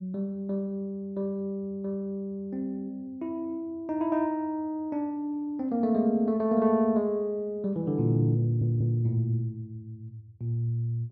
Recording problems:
stutter; at 8.5 s

